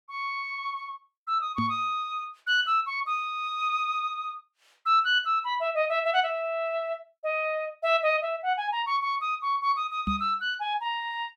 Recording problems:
microphone bump; at 1.5 s and at 10 s; peak +1 dB vs average level

